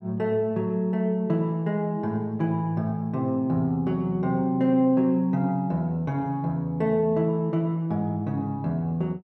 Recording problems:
none

